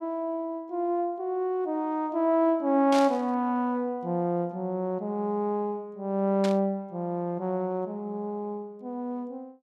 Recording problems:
static burst; at 3 s and at 6.5 s; peak -3 dB vs average level

